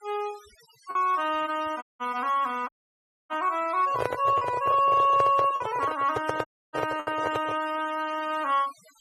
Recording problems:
noise reduction artefacts; signal-to-artefact ratio 19 dB
lost packets; 3% of the sound replaced, filled with the last packet
audio cutting out; at 2 s, at 2.5 s for 0.5 s and at 6.5 s
microphone handling noise; from 4 to 7.5 s; peak +1 dB vs average level

